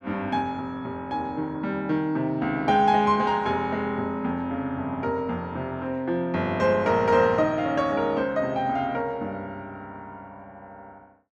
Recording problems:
none

